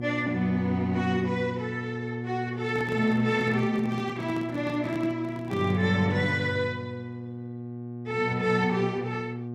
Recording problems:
hum; 60 Hz, harmonics up to 840 Hz, SNR 8 dB
microphone handling noise; from 2.5 to 6 s; peak -5 dB vs average level

